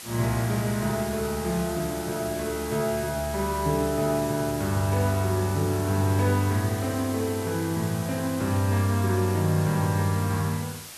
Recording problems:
background hiss; slope 0 dB per octave, SNR 12 dB

